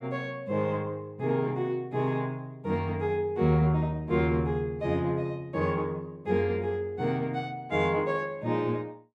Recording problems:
none

